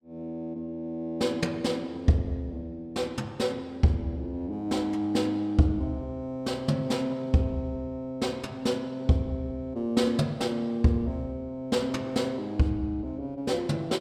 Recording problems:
none

